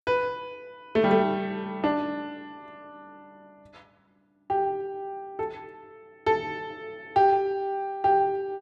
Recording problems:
none

